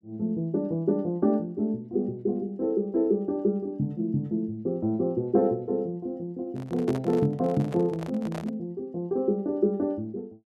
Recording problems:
handling noise; from 6.5 to 8.5 s; peak -6 dB vs average level

